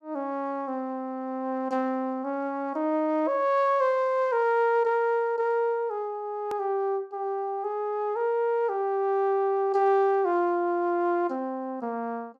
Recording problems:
click at an edit; at 6.5 s

